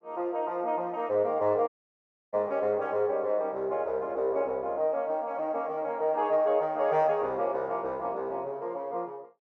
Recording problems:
audio cutting out; at 1.5 s for 0.5 s

